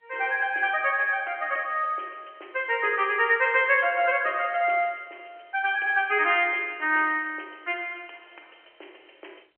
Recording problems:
telephone audio; 260 Hz to 3.2 kHz, G.711

